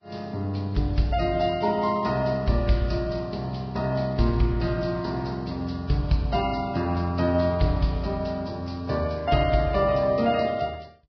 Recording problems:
codec artefacts; Vorbis, log-spectral distance 5 dB, nothing above 5.3 kHz

